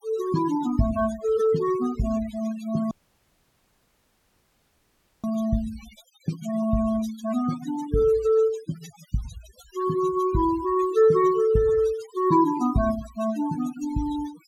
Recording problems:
denoising artefacts; signal-to-artefact ratio 16 dB
audio cutting out; at 3 s for 2.5 s

